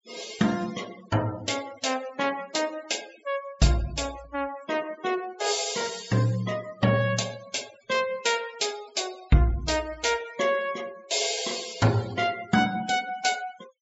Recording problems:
low-pass filter; nothing above 8 kHz
noise reduction artefacts; signal-to-artefact ratio 17 dB

